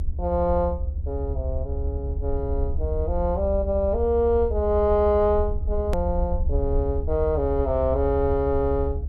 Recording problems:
rumble; below 76 Hz, SNR 4 dB
click at an edit; at 6 s

